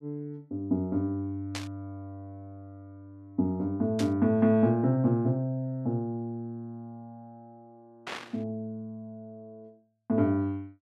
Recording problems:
static burst; at 1.5 s, at 4 s and at 8 s; peak -3 dB vs average level

